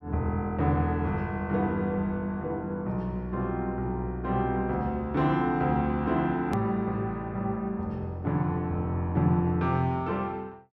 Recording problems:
edit click; at 6.5 s

